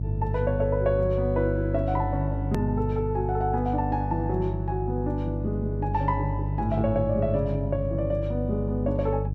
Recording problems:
electrical hum; 50 Hz, harmonics up to 350 Hz, SNR 2 dB
edit click; at 2.5 s

